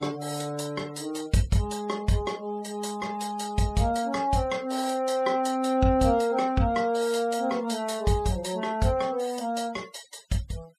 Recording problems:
denoising artefacts; signal-to-artefact ratio 22 dB

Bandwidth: 14.5 kHz